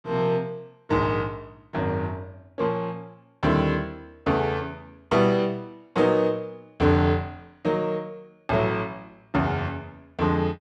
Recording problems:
none

